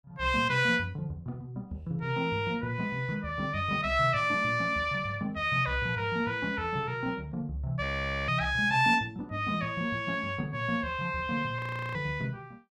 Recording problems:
frozen audio; at 8 s and at 12 s

